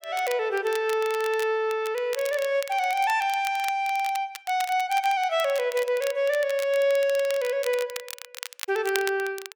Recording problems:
crackle; vinyl, SNR 14 dB

